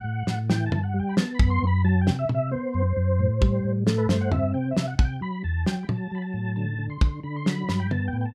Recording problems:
none

